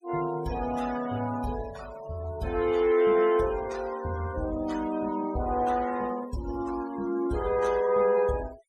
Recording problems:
noise reduction artefacts; signal-to-artefact ratio 17 dB

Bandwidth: 15.5 kHz